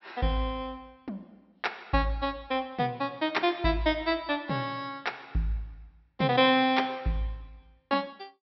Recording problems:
treble missing; nothing above 5.6 kHz

